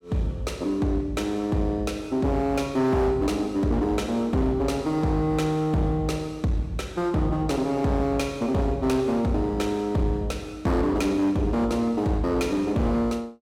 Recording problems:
distortion; hard clipping, uneven, signal-to-distortion ratio 10 dB

